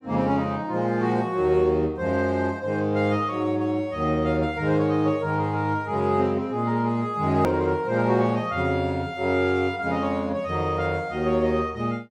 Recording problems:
click at an edit; at 7.5 s

